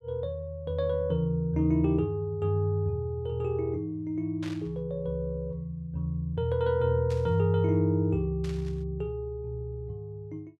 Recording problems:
burst of static; at 4.5 s, at 7 s and at 8.5 s; peak -11 dB vs average level

